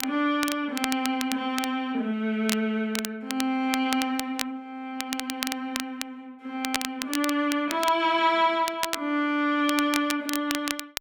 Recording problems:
crackle; vinyl, SNR 7 dB

